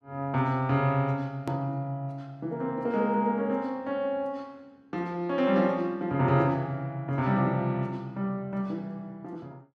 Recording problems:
click at an edit; at 1.5 s

